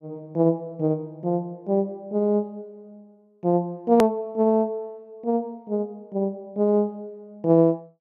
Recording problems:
edit click; at 4 s

